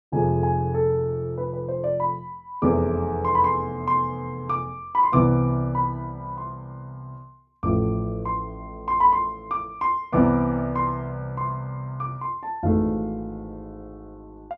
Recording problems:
none

